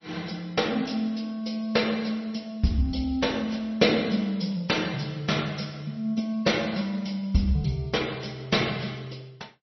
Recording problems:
codec artefacts; MP3, log-spectral distance 5 dB, nothing above 5.8 kHz

